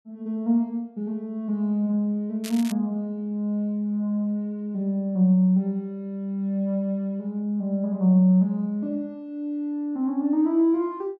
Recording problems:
crackle; at 2.5 s; loose cable, SNR 16 dB

